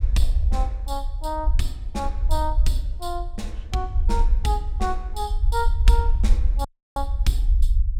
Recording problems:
low-frequency rumble; below 56 Hz, SNR -4 dB
dropout; at 6.5 s

